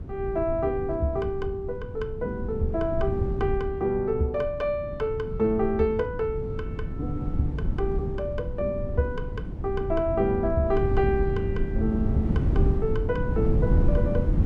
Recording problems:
wind on the microphone; below 140 Hz, SNR 2 dB

